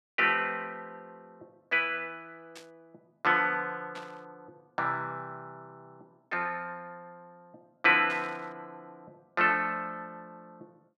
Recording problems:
static burst; at 2.5 s, at 4 s and at 8 s; peak -12 dB vs average level

